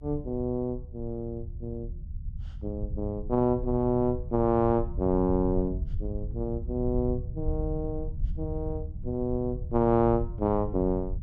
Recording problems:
rumble; below 86 Hz, SNR 8 dB

